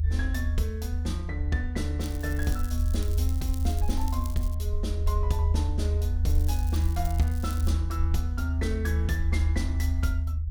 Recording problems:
rumble; below 78 Hz, strongest tone 78 Hz, SNR -6 dB
crackling; from 2 to 4.5 s and from 6.5 to 7.5 s; loose cable, SNR 12 dB

